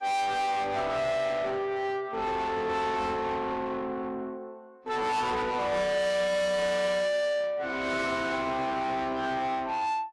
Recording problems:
lossy compression; AAC, log-spectral distance 2 dB, nothing above 11.3 kHz
distortion; soft clipping, signal-to-distortion ratio 6 dB

